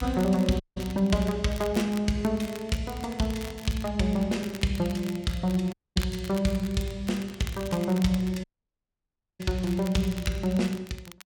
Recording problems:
crackle; vinyl, SNR 17 dB
dropout; at 0.5 s, at 5.5 s and at 8.5 s for 1 s

